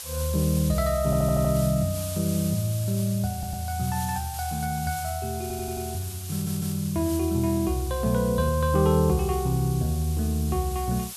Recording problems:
hiss; SNR 11 dB
stutter; 4 times, first at 1 s

